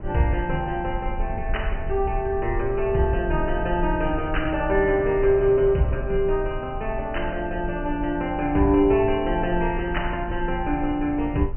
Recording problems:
low-pass filter; nothing above 3 kHz
rumble; below 60 Hz, SNR 10 dB

